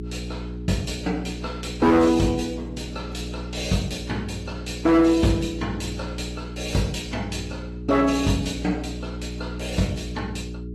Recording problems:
lossy codec; AAC, log-spectral distance 3 dB, nothing above 12.7 kHz
distorted audio; hard clipping, signal-to-distortion ratio 11 dB
hum; 60 Hz, harmonics up to 420 Hz, SNR 9 dB

